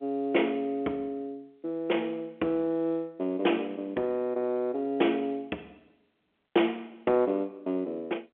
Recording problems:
phone line; 240 Hz to 3.4 kHz, G.711

